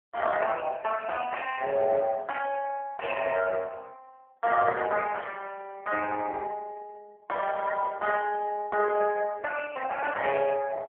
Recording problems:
telephone audio; 370 Hz to 3.1 kHz, AMR-NB

